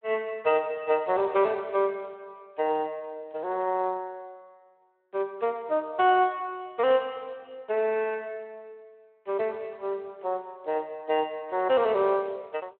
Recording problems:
phone line; 320 Hz to 3.3 kHz, Speex

